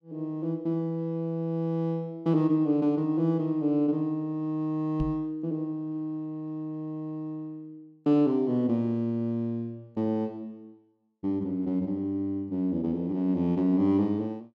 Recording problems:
knock on the microphone; at 5 s; peak 0 dB vs average level

